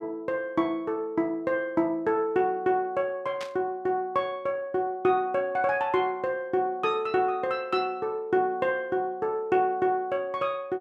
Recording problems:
static burst; at 3.5 s; peak -7 dB vs average level

